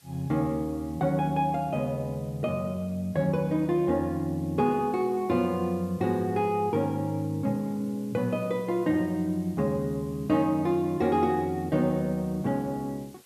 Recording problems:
hiss; slope +1 dB per octave, SNR 27 dB

